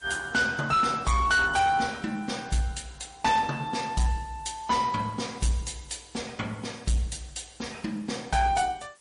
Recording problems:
codec artefacts; MP3, log-spectral distance 7 dB, nothing above 10.1 kHz
distortion; hard clipping, signal-to-distortion ratio 12 dB
background hiss; slope 0 dB per octave, SNR 29 dB

